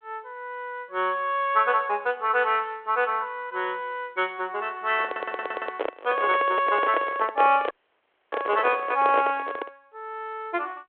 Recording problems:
phone line; 300 Hz to 3.4 kHz, G.726
microphone handling noise; from 5 to 9.5 s; peak +1 dB vs average level
stutter; at 5 s
dropout; at 7.5 s for 0.5 s

